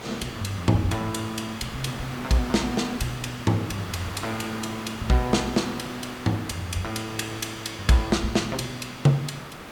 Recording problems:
hiss; SNR 11 dB

